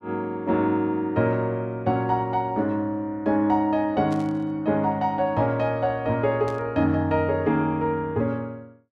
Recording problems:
burst of static; at 4 s and at 6.5 s; peak -16 dB vs average level

